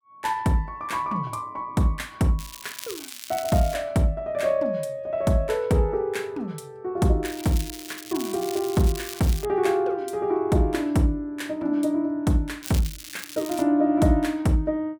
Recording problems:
crackling; from 2.5 to 3.5 s, from 7.5 to 9.5 s and from 13 to 14 s; loose cable, SNR 13 dB

